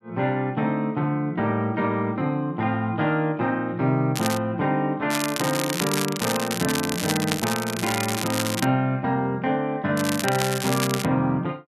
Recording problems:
crackle; at 4 s, from 5 to 8.5 s and from 10 to 11 s; loose cable, SNR 5 dB

